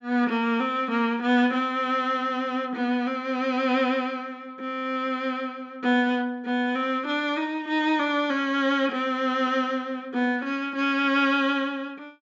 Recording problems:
treble missing; nothing above 8 kHz

